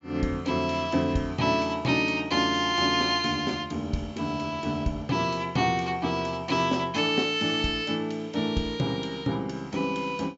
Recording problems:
treble cut off; nothing above 8 kHz

